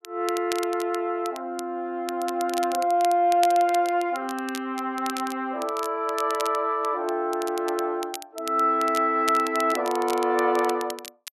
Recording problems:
crackling; vinyl, SNR 15 dB

